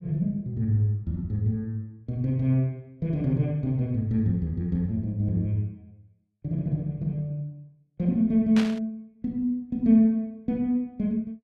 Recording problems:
burst of static; at 8.5 s; peak -3 dB vs average level

